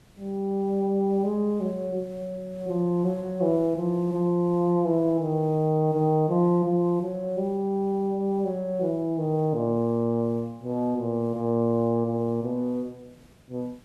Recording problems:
hiss; slope -4 dB per octave, SNR 28 dB

